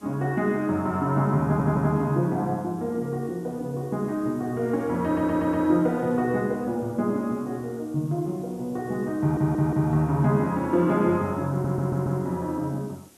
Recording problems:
hiss; SNR 28 dB
stutter; 4 times, first at 1.5 s

